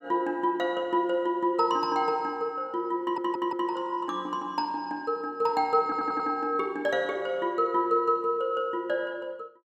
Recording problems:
stutter; at 3 s and at 6 s

